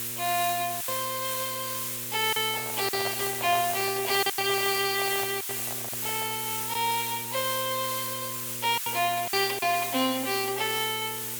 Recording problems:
mains hum; 60 Hz, harmonics up to 1.1 kHz, SNR 17 dB
hiss; SNR 2 dB
lost packets; 5% of the sound replaced, filled with silence
microphone handling noise; from 2.5 to 6.5 s; peak -2 dB vs average level

